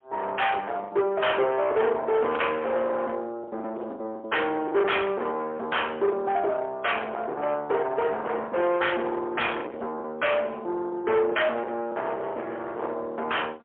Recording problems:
phone line; 280 Hz to 3.3 kHz, AMR-NB, then MP3
distortion; soft clipping, signal-to-distortion ratio 8 dB
lost packets; 8% of the sound replaced, filled with the last packet

